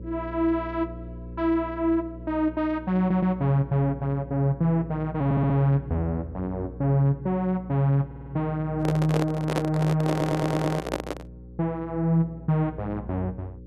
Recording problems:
mains hum; 60 Hz, harmonics up to 540 Hz, SNR 15 dB
audio stuttering; 4 times, first at 3 s
handling noise; from 9 to 11 s; peak +2 dB vs average level

